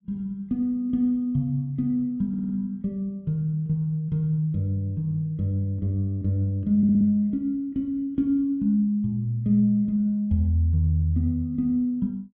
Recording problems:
stutter; at 2.5 s and at 7 s

